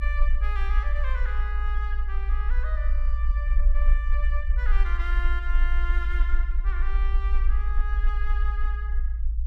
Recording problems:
low-frequency rumble; below 54 Hz, strongest tone 22 Hz, SNR -10 dB

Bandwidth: 14.5 kHz